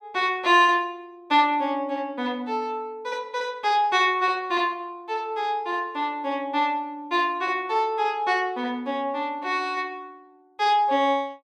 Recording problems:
none

